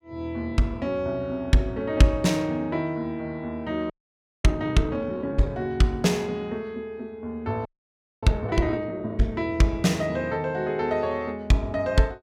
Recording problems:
frozen audio; at 4 s for 0.5 s and at 7.5 s for 0.5 s

